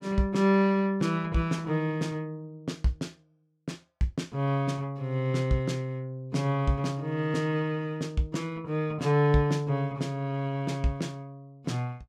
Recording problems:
none

